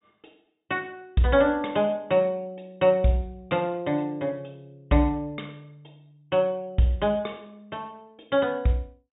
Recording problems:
treble missing; nothing above 3.8 kHz

